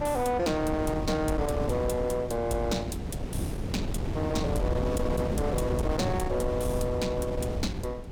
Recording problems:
distortion; soft clipping, signal-to-distortion ratio 12 dB
wind noise; below 330 Hz, SNR 3 dB

